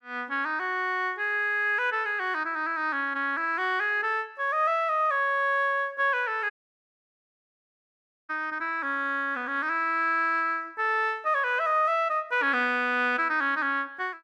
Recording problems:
dropout; at 6.5 s for 2 s

